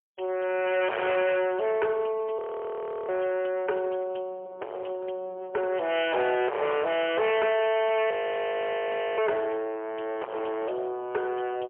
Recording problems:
telephone audio; 320 Hz to 3.3 kHz, AMR-NB, then MP3
distortion; hard clipping, signal-to-distortion ratio 4 dB
audio freezing; at 2.5 s for 0.5 s and at 8 s for 1 s

